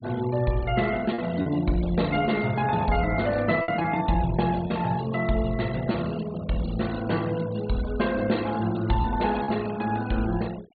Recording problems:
treble cut off; nothing above 4.4 kHz
denoising artefacts; signal-to-artefact ratio 17 dB
lost packets; 2% of the sound replaced, filled with repeated pitch periods

